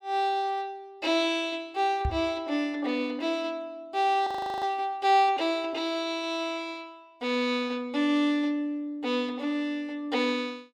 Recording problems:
microphone thump; at 2 s; peak +1 dB vs average level
frozen audio; at 4.5 s

